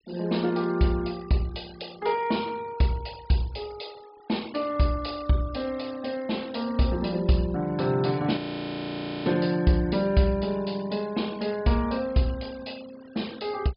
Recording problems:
low-pass filter; nothing above 5.5 kHz
denoising artefacts; signal-to-artefact ratio 22 dB
frozen audio; at 8.5 s for 1 s

